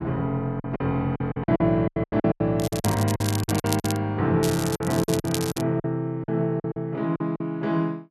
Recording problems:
lost packets; 14% of the sound replaced, filled with silence
crackle; from 2.5 to 4 s and from 4.5 to 5.5 s; loose cable, SNR 9 dB

